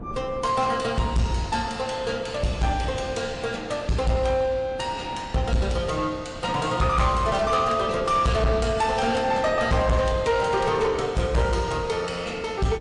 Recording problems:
codec artefacts; MP3, log-spectral distance 2 dB, nothing above 9.5 kHz
distorted audio; soft clipping, signal-to-distortion ratio 10 dB
wind noise; below 400 Hz, SNR 17 dB

